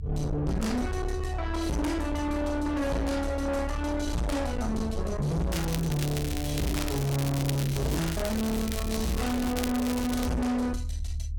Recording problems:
distortion; soft clipping, signal-to-distortion ratio 6 dB
rumble; below 110 Hz, SNR 5 dB
crackling; from 5.5 to 10 s; loose cable, SNR 9 dB

